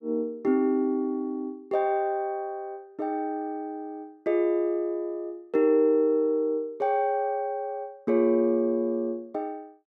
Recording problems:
none

